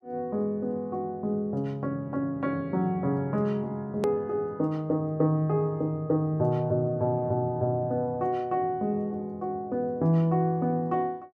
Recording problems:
click at an edit; at 4 s

